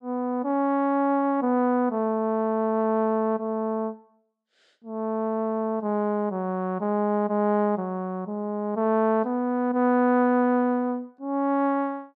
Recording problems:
none

